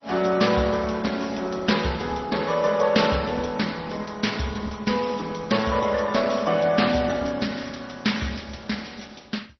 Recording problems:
lossy codec; MP3, then Opus, log-spectral distance 7 dB, nothing above 5.8 kHz

